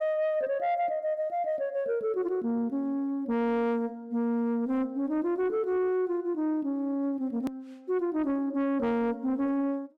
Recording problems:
distortion; soft clipping, signal-to-distortion ratio 12 dB
click at an edit; at 7.5 s

